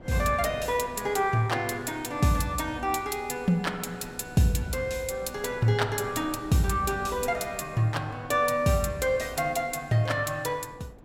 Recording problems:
wind on the microphone; below 510 Hz, SNR 21 dB

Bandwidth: 16 kHz